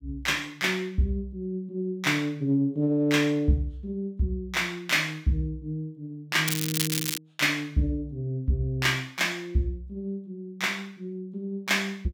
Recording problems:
crackling; at 6.5 s; loose cable, SNR 1 dB

